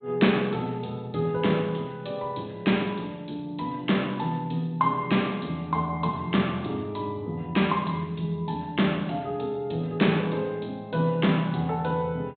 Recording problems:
treble cut off; nothing above 4 kHz
codec artefacts; MP2, log-spectral distance 4 dB

